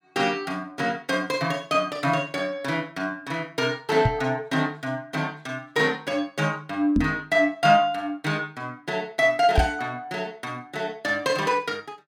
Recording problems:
knock on the microphone; at 4 s, at 7 s and at 9.5 s; peak +7 dB vs average level

